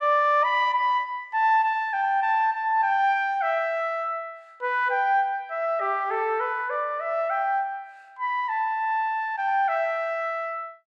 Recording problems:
none

